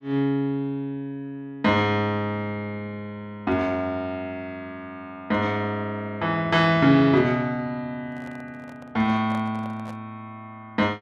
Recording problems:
handling noise; from 8 to 10 s; peak -11 dB vs average level

